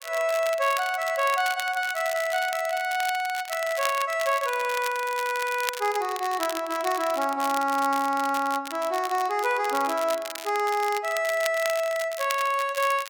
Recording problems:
crackling; vinyl, SNR 11 dB

